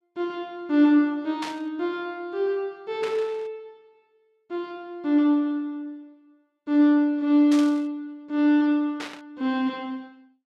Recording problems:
static burst; 4 times, first at 1.5 s; peak -6 dB vs average level

